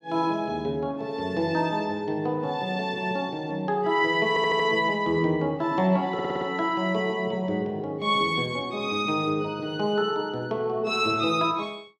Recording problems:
stutter; at 4.5 s and at 6 s

